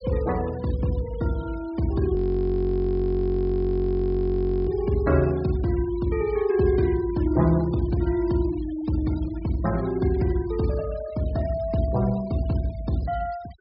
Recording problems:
treble missing; nothing above 5.5 kHz
noise reduction artefacts; signal-to-artefact ratio 22 dB
frozen audio; at 2 s for 2.5 s

